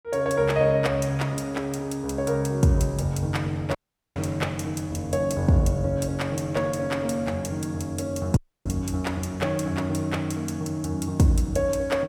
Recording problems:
audio cutting out; at 4 s and at 8.5 s

